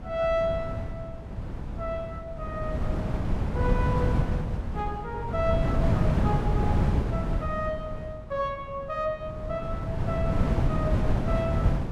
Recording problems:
wind on the microphone; below 210 Hz, SNR -4 dB

